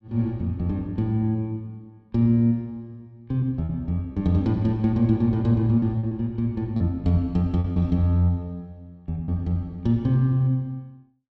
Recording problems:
lost packets; 3% of the sound replaced, filled with repeated pitch periods

